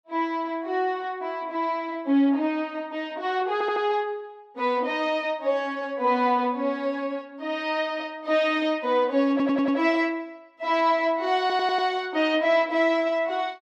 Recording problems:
audio stuttering; at 3.5 s, at 9.5 s and at 11 s

